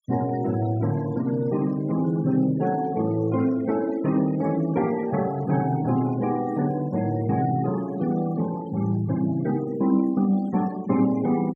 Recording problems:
noise reduction artefacts; signal-to-artefact ratio 21 dB

